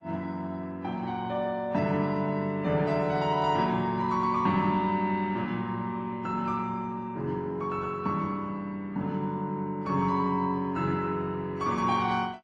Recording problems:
lossy compression; AAC, then Opus, log-spectral distance 2 dB, nothing above 11 kHz

